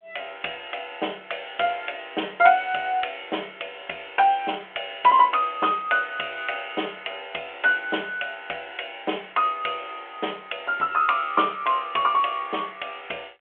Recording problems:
telephone audio; 280 Hz to 3.3 kHz, G.726

